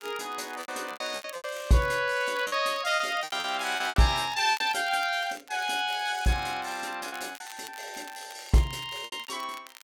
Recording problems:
crackling; vinyl, SNR 20 dB
packet loss; 11% of the sound replaced, filled with repeated pitch periods

